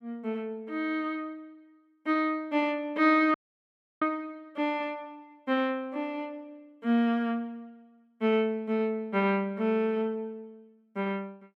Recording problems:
audio cutting out; at 3.5 s for 0.5 s

